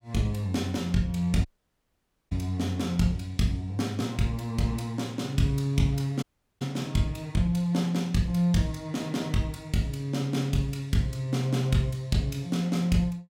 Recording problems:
dropout; at 1.5 s for 1 s and at 6 s

